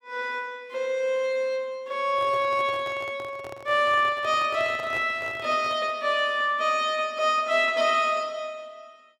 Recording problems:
handling noise; from 2 to 6 s; peak -9 dB vs average level

